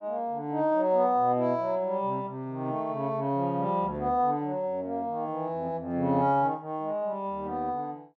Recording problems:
none

